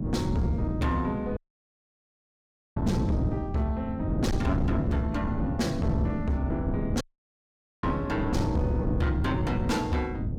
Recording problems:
distortion; soft clipping, signal-to-distortion ratio 10 dB
electrical hum; 60 Hz, harmonics up to 720 Hz, SNR 23 dB
wind noise; below 240 Hz, SNR 1 dB
audio cutting out; at 1.5 s for 1.5 s and at 7 s for 1 s

